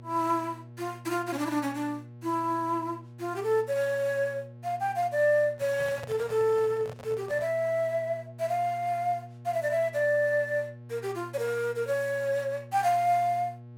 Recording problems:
electrical hum; 60 Hz, harmonics up to 840 Hz, SNR 18 dB
microphone handling noise; from 5.5 to 7.5 s; peak -7 dB vs average level

